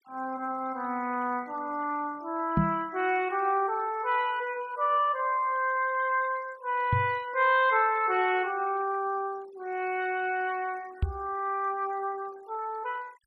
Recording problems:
noise reduction artefacts; signal-to-artefact ratio 24 dB
knock on the microphone; at 2.5 s, at 7 s and at 11 s; peak +6 dB vs average level

